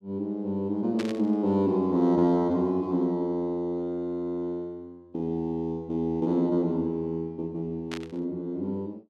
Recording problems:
burst of static; at 1 s and at 8 s; peak -5 dB vs average level

